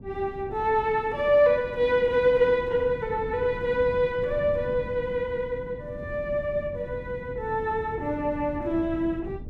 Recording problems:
wind noise; below 210 Hz, SNR 15 dB

